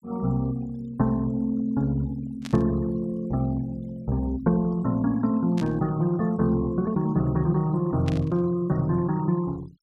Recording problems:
noise reduction artefacts; signal-to-artefact ratio 25 dB
static burst; at 2.5 s, at 5.5 s and at 8 s; peak -8 dB vs average level

